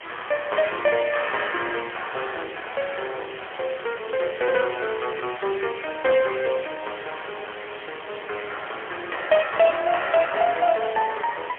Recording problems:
phone line; 340 Hz to 3.2 kHz, AMR-NB, then MP3
hiss; SNR 13 dB

